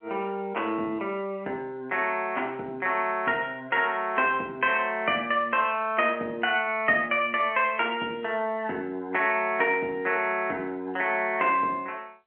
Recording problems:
telephone audio; 240 Hz to 3.2 kHz, G.711

